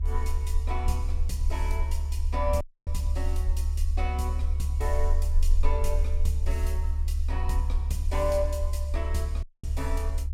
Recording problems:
low-frequency rumble; below 72 Hz, SNR -6 dB
dropout; at 2.5 s and at 9.5 s

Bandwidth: 16.5 kHz